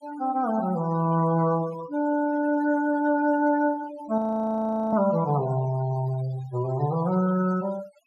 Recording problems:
noise reduction artefacts; signal-to-artefact ratio 17 dB
frozen audio; at 4 s for 1 s

